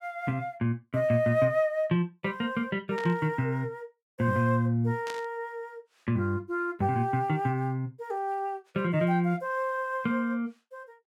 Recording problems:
burst of static; at 3 s and at 5 s; peak -7 dB vs average level

